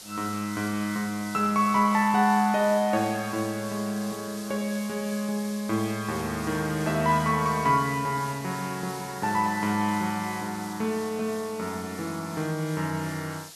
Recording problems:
hiss; SNR 14 dB

